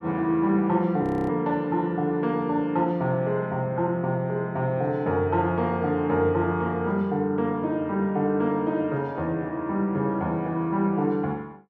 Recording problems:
frozen audio; at 1 s

